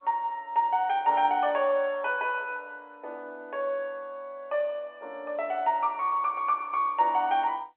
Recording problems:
phone line; 320 Hz to 3.4 kHz, G.711

